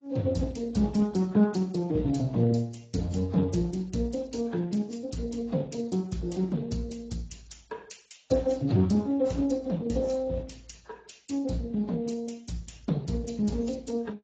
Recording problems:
lossy compression; Speex, then AAC, log-spectral distance 4 dB, nothing above 7.6 kHz

